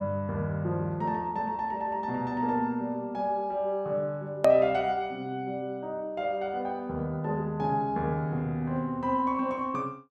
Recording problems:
click at an edit; at 4.5 s

